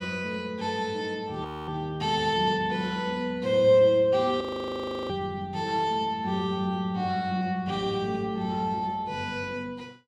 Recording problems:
frozen audio; at 1.5 s and at 4.5 s for 0.5 s

